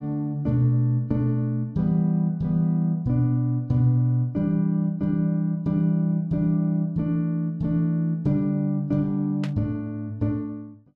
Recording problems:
static burst; at 9.5 s; peak -10 dB vs average level

